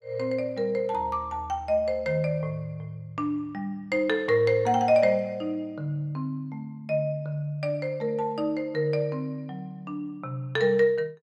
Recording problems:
none

